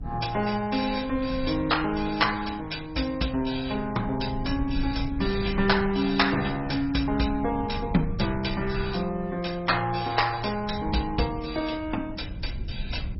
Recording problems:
lossy compression; MP3, then MP2, log-spectral distance 5 dB, nothing above 5.5 kHz
rumble; below 120 Hz, SNR 11 dB

